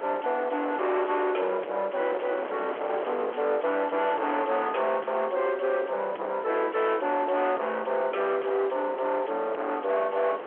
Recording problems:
telephone audio; 370 Hz to 3.3 kHz, G.711
distortion; soft clipping, signal-to-distortion ratio 8 dB
wind noise; below 1.1 kHz, SNR 10 dB

